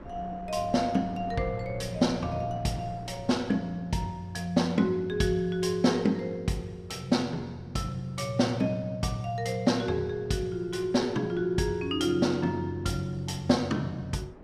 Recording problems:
wind on the microphone; below 520 Hz, SNR 21 dB

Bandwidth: 14.5 kHz